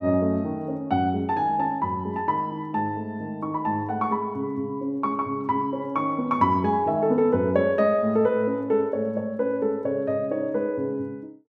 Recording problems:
none

